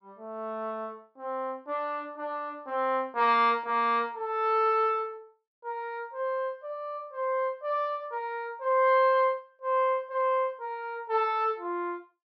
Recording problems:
treble cut off; nothing above 6.1 kHz

